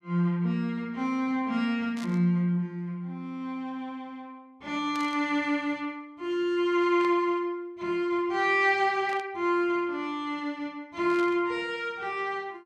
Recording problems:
static burst; 5 times, first at 2 s; peak -11 dB vs average level

